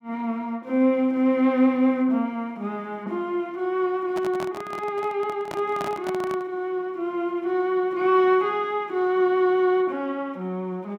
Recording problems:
microphone handling noise; from 4 to 6.5 s; peak -5 dB vs average level

